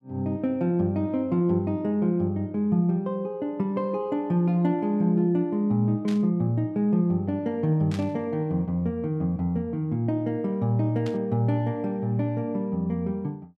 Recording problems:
static burst; at 6 s, at 8 s and at 11 s; peak -10 dB vs average level

